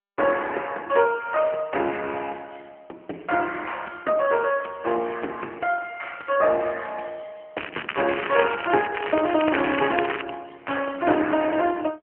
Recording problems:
phone line; 240 Hz to 3.1 kHz, AMR-NB
crackle; from 7.5 to 10 s; loose cable, SNR 8 dB

